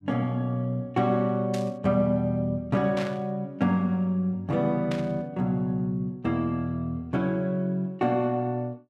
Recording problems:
static burst; at 1.5 s, at 3 s and at 5 s; peak -6 dB vs average level

